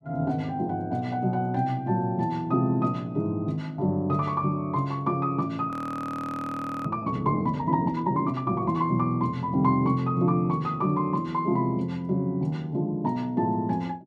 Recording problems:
audio freezing; at 5.5 s for 1 s

